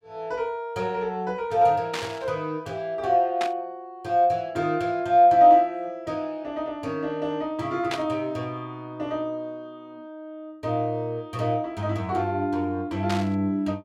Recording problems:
static burst; 4 times, first at 2 s; peak -2 dB vs average level

